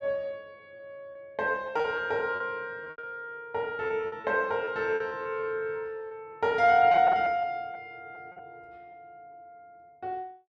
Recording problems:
lost packets; 9% of the sound replaced, filled with repeated pitch periods

